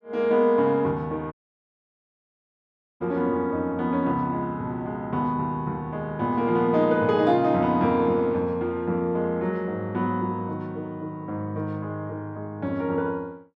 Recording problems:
dropout; at 1.5 s for 1.5 s

